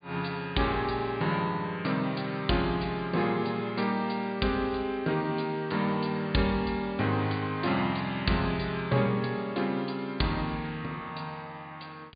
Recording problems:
treble missing; nothing above 4.7 kHz

